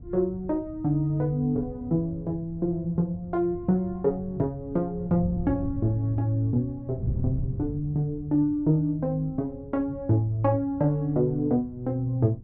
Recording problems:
wind noise; below 130 Hz, SNR 12 dB

